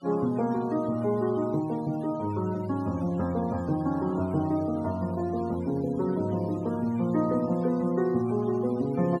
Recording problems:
denoising artefacts; signal-to-artefact ratio 20 dB

